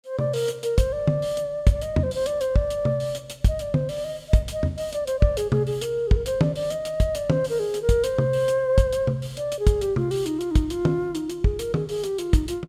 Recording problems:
none

